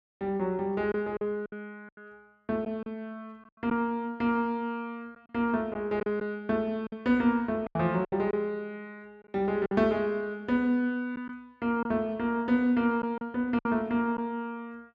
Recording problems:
lost packets; 5% of the sound replaced, filled with silence

